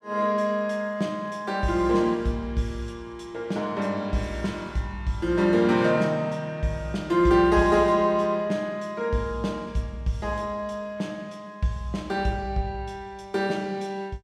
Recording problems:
none

